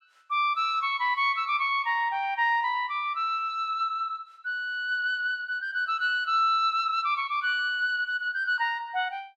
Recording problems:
none

